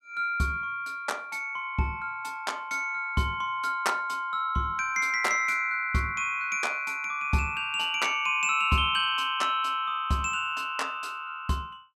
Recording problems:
none

